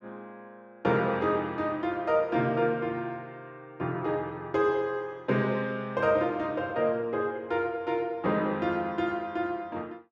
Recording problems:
none

